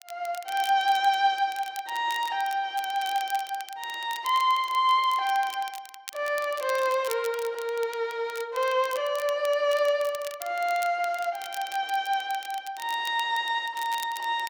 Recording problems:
crackle; vinyl, SNR 17 dB

